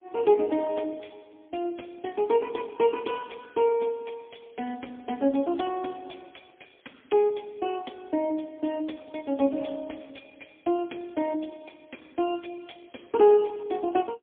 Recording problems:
telephone audio; 220 Hz to 3.4 kHz, AMR-NB, then MP3

